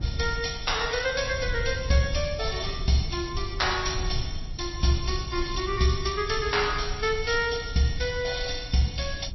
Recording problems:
lossy codec; MP3, log-spectral distance 9 dB, nothing above 5.7 kHz
low-frequency rumble; below 94 Hz, SNR 10 dB

